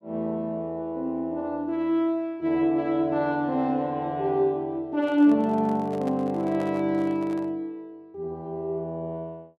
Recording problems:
handling noise; from 5 to 7.5 s; peak -9 dB vs average level

